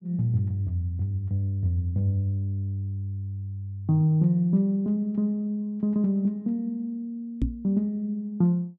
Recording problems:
knock on the microphone; at 7.5 s; peak +4 dB vs average level

